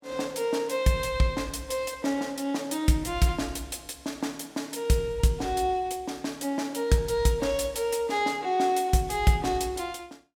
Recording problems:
none

